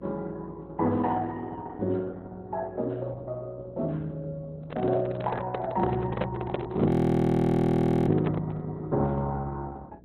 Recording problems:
lossy compression; Opus, log-spectral distance 2 dB, nothing above 13.1 kHz
mains hum; 60 Hz, harmonics up to 480 Hz, SNR 25 dB
handling noise; from 4.5 to 8.5 s; peak +3 dB vs average level
audio freezing; at 7 s for 1 s

